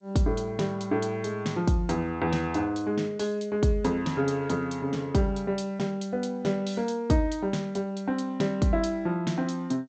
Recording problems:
lossy compression; G.722, log-spectral distance 2 dB, nothing above 7.6 kHz

